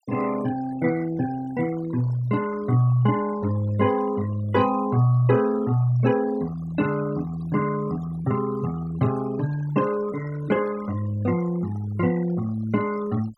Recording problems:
noise reduction artefacts; signal-to-artefact ratio 18 dB

